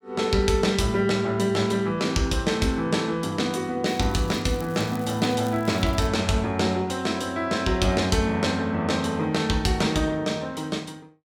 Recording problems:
crackling; from 4 to 6 s; loose cable, SNR 23 dB

